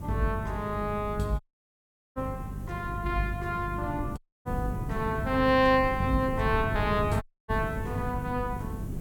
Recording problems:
electrical hum; 50 Hz, harmonics up to 450 Hz, SNR 10 dB
background hiss; SNR 27 dB
wind noise; below 210 Hz, SNR 8 dB
dropout; at 1.5 s for 1 s, at 4 s and at 7 s

